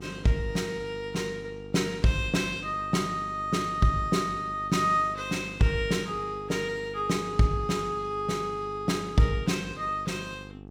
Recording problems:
hum; 50 Hz, harmonics up to 1.2 kHz, SNR 16 dB

